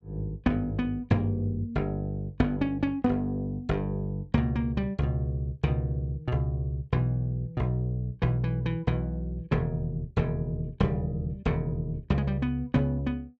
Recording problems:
none

